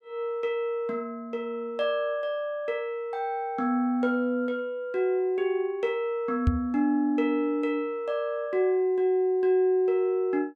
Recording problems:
microphone bump; at 6.5 s; peak +7 dB vs average level

